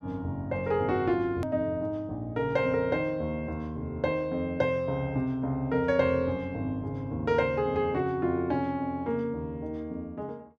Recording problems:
edit click; at 1.5 s

